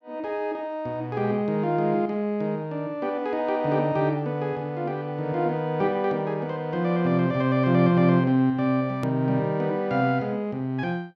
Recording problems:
click at an edit; at 9 s

